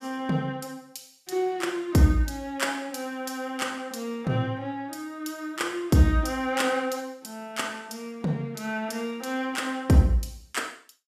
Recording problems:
none

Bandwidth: 15 kHz